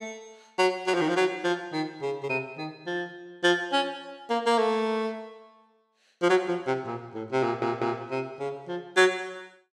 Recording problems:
audio stuttering; at 7.5 s

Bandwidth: 15.5 kHz